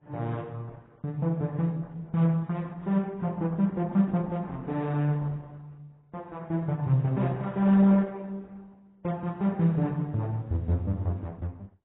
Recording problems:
lossy codec; Opus, then AAC, log-spectral distance 2 dB, nothing above 11.3 kHz

